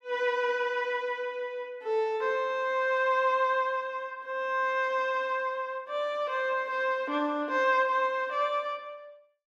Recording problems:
none

